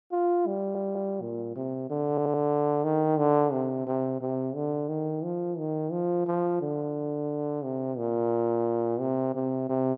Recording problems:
stutter; at 0.5 s and at 2 s

